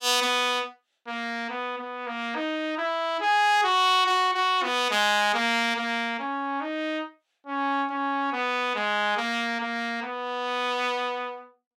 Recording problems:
none

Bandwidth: 16 kHz